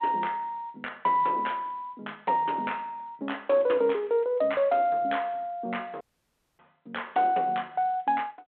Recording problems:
phone line; 300 Hz to 3.6 kHz, G.726
audio cutting out; at 6 s for 0.5 s

